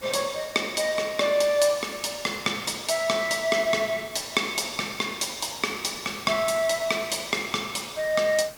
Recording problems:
hiss; slope -3 dB per octave, SNR 19 dB

